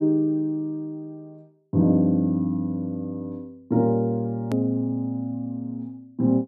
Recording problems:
edit click; at 4.5 s

